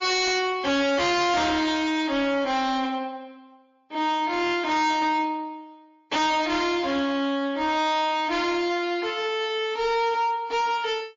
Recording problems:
codec artefacts; MP3, then MP3, log-spectral distance 2 dB, nothing above 6 kHz
distortion; hard clipping, signal-to-distortion ratio 6 dB

